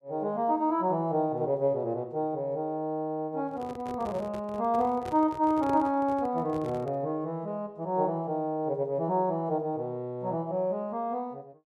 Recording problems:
microphone handling noise; from 3.5 to 7 s; peak -5 dB vs average level

